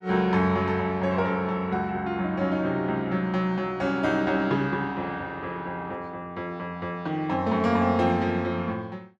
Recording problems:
none

